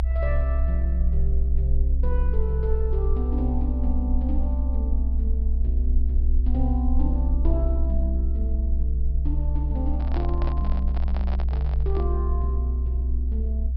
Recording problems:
treble missing; nothing above 5.5 kHz
rumble; below 64 Hz, strongest tone 62 Hz, SNR -8 dB
microphone handling noise; from 10 to 12 s; peak 0 dB vs average level

